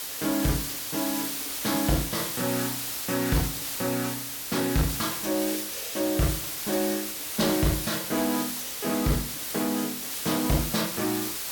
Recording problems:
distortion; soft clipping, signal-to-distortion ratio 11 dB
background hiss; slope +1 dB per octave, SNR 2 dB

